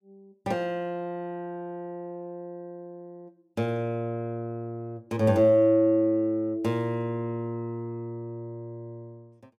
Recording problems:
none

